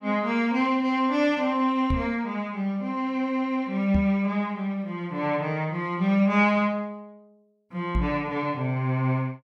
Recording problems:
microphone bump; at 2 s, at 4 s and at 8 s; peak +2 dB vs average level

